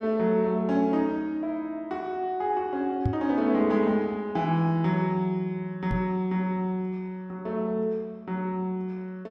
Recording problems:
knock on the microphone; at 3 s and at 6 s; peak +5 dB vs average level

